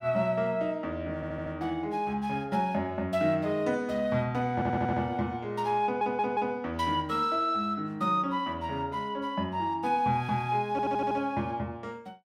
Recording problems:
audio stuttering; 4 times, first at 1 s

